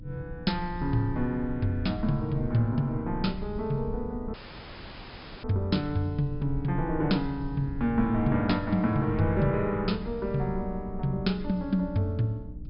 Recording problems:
low-pass filter; nothing above 5.5 kHz
hum; 60 Hz, harmonics up to 300 Hz, SNR 18 dB
low-frequency rumble; below 66 Hz, SNR 13 dB
dropout; at 4.5 s for 1 s

